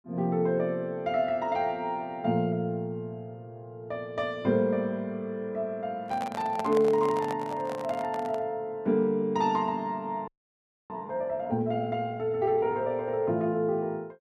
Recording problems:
handling noise; from 6 to 8.5 s; peak -2 dB vs average level
audio freezing; at 10 s for 0.5 s

